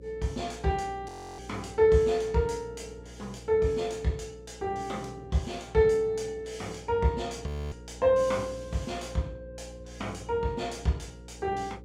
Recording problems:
hum; 60 Hz, harmonics up to 540 Hz, SNR 18 dB
audio freezing; at 1 s and at 7.5 s

